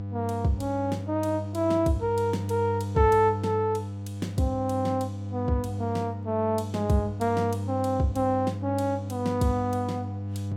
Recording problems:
hum; 50 Hz, harmonics up to 700 Hz, SNR 6 dB

